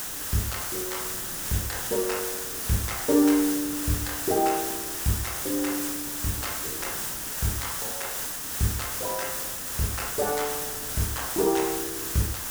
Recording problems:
background hiss; slope 0 dB per octave, SNR 0 dB
wind noise; below 410 Hz, SNR 20 dB

